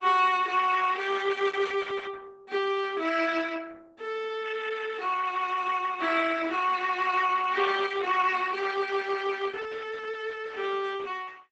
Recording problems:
lossy codec; Opus, log-spectral distance 5 dB, nothing above 7.8 kHz

